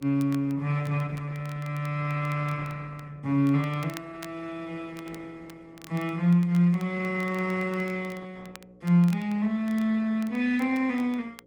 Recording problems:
lossy compression; Opus, log-spectral distance 2 dB
hum; 60 Hz, harmonics up to 540 Hz, SNR 29 dB
crackle; vinyl, SNR 24 dB

